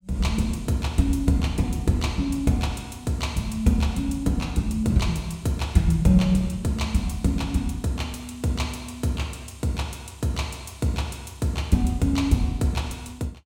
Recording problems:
none

